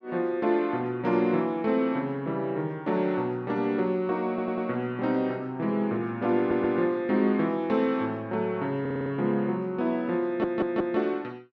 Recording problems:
stutter; 4 times, first at 4.5 s

